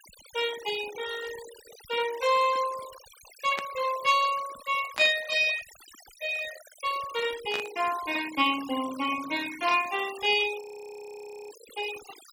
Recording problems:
denoising artefacts; signal-to-artefact ratio 15 dB
static burst; at 3.5 s, at 5 s and at 7.5 s; peak -2 dB vs average level
frozen audio; at 11 s for 1 s

